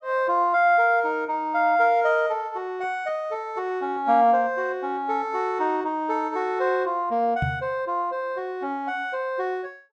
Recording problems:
microphone thump; at 7.5 s; peak +1 dB vs average level

